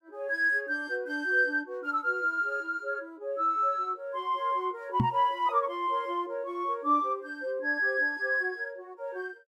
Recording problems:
knock on the microphone; at 5 s; peak +6 dB vs average level

